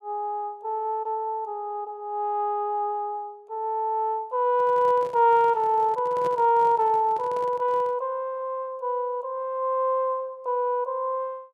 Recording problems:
microphone handling noise; from 4.5 to 8 s; peak -8 dB vs average level

